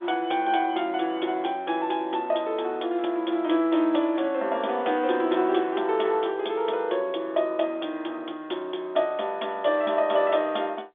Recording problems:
telephone audio; 280 Hz to 3.6 kHz, G.711

